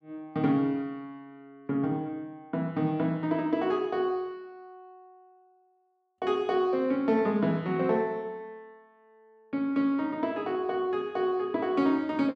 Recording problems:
none

